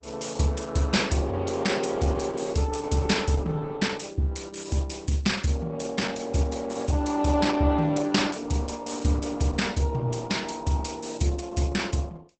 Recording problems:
codec artefacts; Opus, log-spectral distance 5 dB, nothing above 8 kHz

